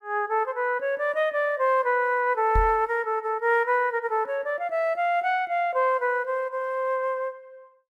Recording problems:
microphone bump; at 2.5 s; peak +1 dB vs average level

